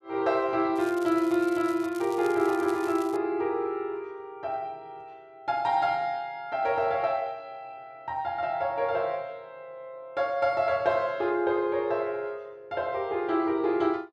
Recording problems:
crackle; from 1 to 3 s; loose cable, SNR 21 dB

